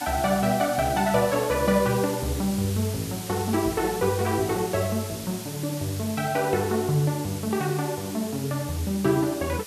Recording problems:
hiss; slope +1 dB per octave, SNR 11 dB

